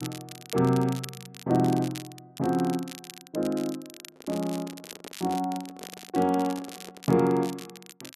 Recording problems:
crackle; vinyl, SNR 16 dB
handling noise; from 4 to 7 s; peak -11 dB vs average level

